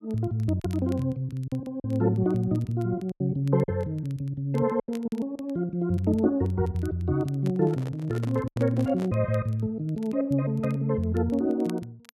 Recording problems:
crackle; vinyl, SNR 29 dB
lost packets; 4% of the sound replaced, filled with silence
microphone handling noise; from 7.5 to 9 s; peak -6 dB vs average level

